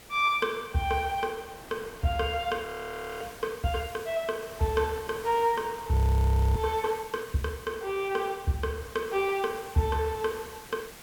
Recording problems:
background hiss; slope -1 dB per octave, SNR 18 dB
wind noise; below 1.1 kHz, SNR 22 dB
frozen audio; at 2.5 s for 0.5 s and at 6 s for 0.5 s

